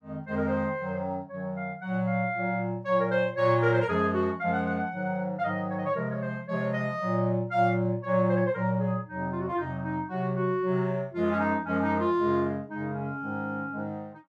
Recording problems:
none

